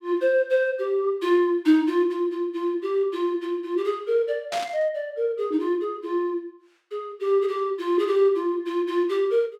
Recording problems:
static burst; at 4.5 s; peak -4 dB vs average level

